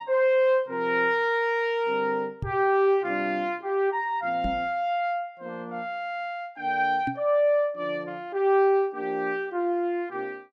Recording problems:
knock on the microphone; at 2.5 s, at 4.5 s and at 7 s; peak -2 dB vs average level

